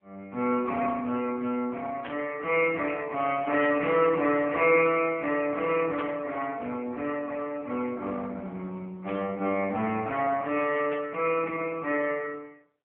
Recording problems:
phone line; 260 Hz to 3.1 kHz, AMR-NB
burst of static; 5 times, first at 2 s; peak -8 dB vs average level

